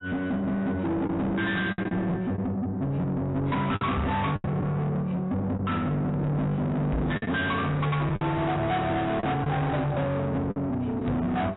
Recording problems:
lossy compression; AAC, log-spectral distance 2 dB, nothing above 3.8 kHz
distortion; soft clipping, signal-to-distortion ratio 6 dB
lost packets; 5% of the sound replaced, filled with the last packet
microphone bump; at 4 s, at 7 s and at 11 s; peak +5 dB vs average level

